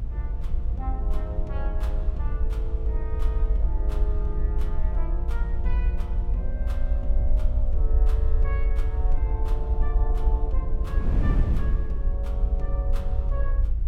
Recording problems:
low-frequency rumble; below 56 Hz, SNR -12 dB
wind noise; below 120 Hz, SNR -3 dB

